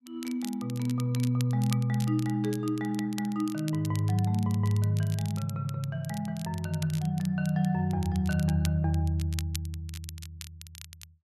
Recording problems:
crackling; vinyl, SNR 16 dB

